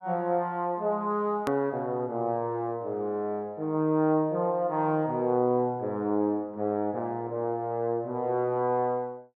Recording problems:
edit click; at 1.5 s

